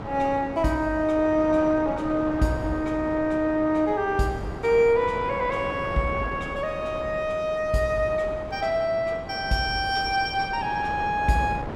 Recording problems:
wind on the microphone; below 780 Hz, SNR 12 dB

